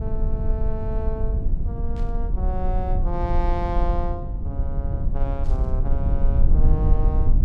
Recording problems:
low-frequency rumble; below 60 Hz, strongest tone 20 Hz, SNR -7 dB
burst of static; at 2 s and at 5.5 s; peak -13 dB vs average level

